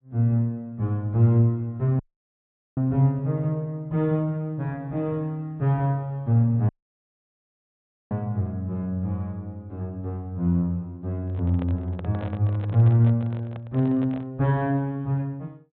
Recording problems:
low-pass filter; nothing above 4 kHz
dropout; at 2 s for 1 s and at 6.5 s for 1.5 s
handling noise; from 11 to 14 s; peak -10 dB vs average level

